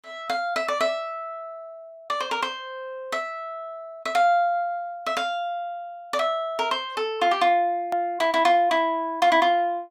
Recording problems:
hard cut with a click; at 8 s

